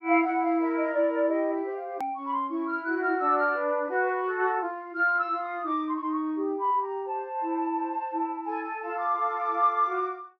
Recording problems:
treble cut off; nothing above 6.1 kHz
edit click; at 2 s

